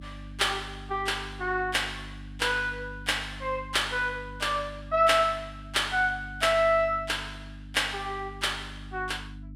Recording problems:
hum; 50 Hz, harmonics up to 300 Hz, SNR 16 dB

